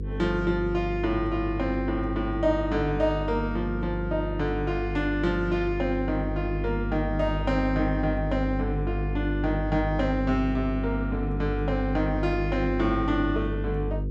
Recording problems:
hum; 50 Hz, harmonics up to 500 Hz, SNR 4 dB

